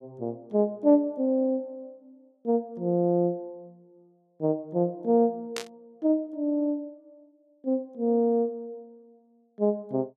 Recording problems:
static burst; at 5.5 s; peak -2 dB vs average level

